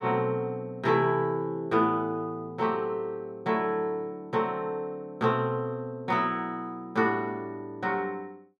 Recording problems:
none

